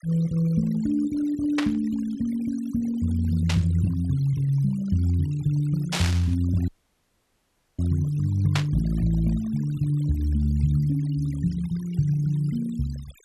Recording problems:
noise reduction artefacts; signal-to-artefact ratio 21 dB
burst of static; 4 times, first at 1.5 s; peak +2 dB vs average level
audio cutting out; at 6.5 s for 1 s

